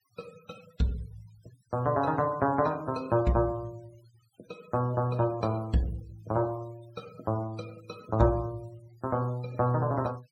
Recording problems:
noise reduction artefacts; signal-to-artefact ratio 25 dB

